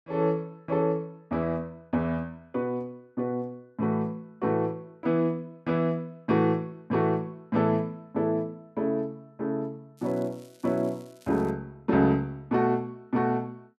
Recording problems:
crackling; from 10 to 12 s; loose cable, SNR 28 dB

